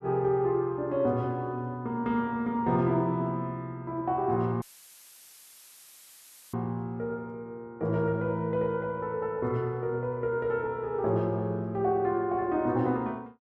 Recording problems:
dropout; at 4.5 s for 2 s; filled with static

